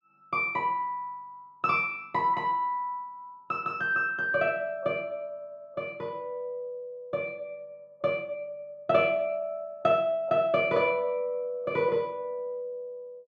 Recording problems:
none

